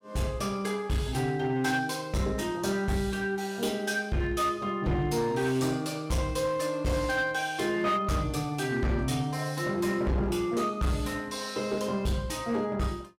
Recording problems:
distortion; hard clipping, signal-to-distortion ratio 12 dB

